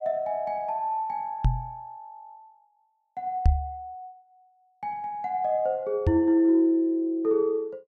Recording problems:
knock on the microphone; at 1.5 s, at 3.5 s and at 6 s; peak +8 dB vs average level

